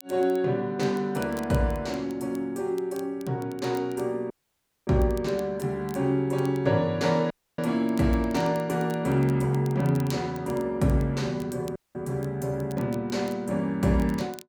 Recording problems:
crackle; vinyl, SNR 23 dB
dropout; at 4.5 s for 0.5 s, at 7.5 s and at 12 s

